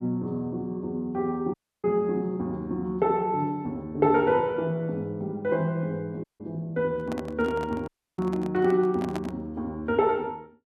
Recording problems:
dropout; at 1.5 s, at 6 s and at 8 s
handling noise; from 7 to 9.5 s; peak -3 dB vs average level

